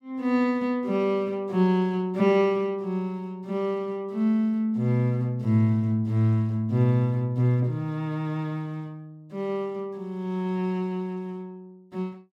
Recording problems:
none

